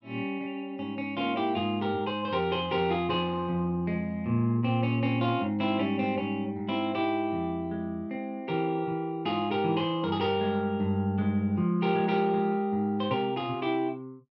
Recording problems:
none

